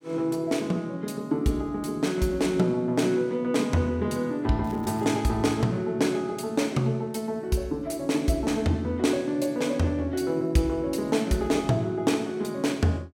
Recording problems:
crackling; at 4.5 s; loose cable, SNR 28 dB

